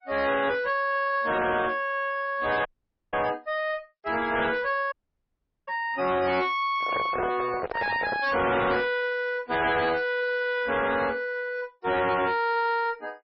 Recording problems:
lossy compression; MP3, log-spectral distance 3 dB, nothing above 5.5 kHz
distorted audio; soft clipping, signal-to-distortion ratio 6 dB
audio cutting out; at 2.5 s and at 5 s for 1 s
handling noise; from 6.5 to 8 s; peak 0 dB vs average level

